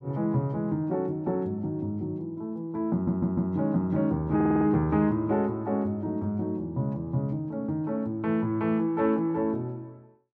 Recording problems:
stutter; at 3 s and at 4.5 s

